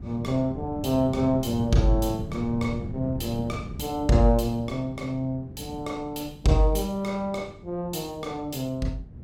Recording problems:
wind noise; below 210 Hz, SNR 11 dB

